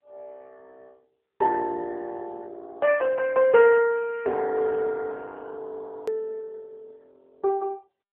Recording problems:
telephone audio; 300 Hz to 3.3 kHz, AMR-NB
click at an edit; at 6 s

